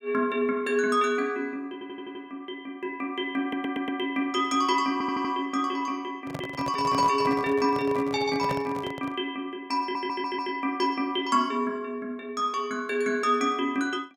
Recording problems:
stutter; 4 times, first at 1.5 s
handling noise; from 6 to 9 s; peak -1 dB vs average level

